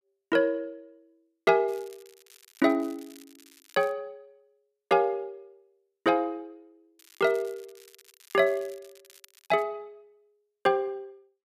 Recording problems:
crackling; from 1.5 to 4 s and from 7 to 9.5 s; loose cable, SNR 26 dB

